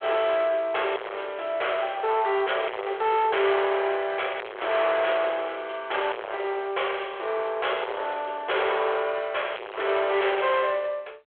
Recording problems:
phone line; 340 Hz to 3.4 kHz, G.726
distorted audio; hard clipping, signal-to-distortion ratio 5 dB

